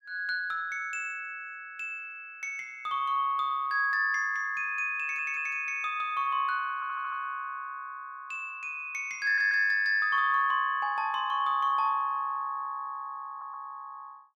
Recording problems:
audio stuttering; 4 times, first at 5 s

